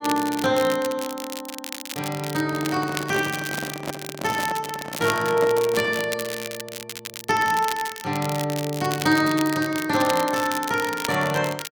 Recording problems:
crackle; vinyl, SNR 10 dB
handling noise; from 2.5 to 6 s; peak -2 dB vs average level

